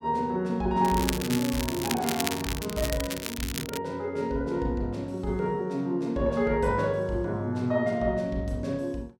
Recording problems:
crackling; from 1 to 4 s; loose cable, SNR 5 dB

